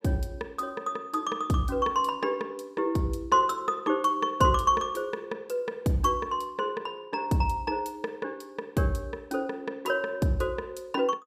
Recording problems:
none

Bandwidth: 15.5 kHz